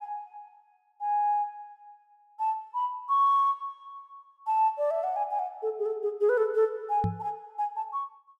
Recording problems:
knock on the microphone; at 7 s; peak +2 dB vs average level

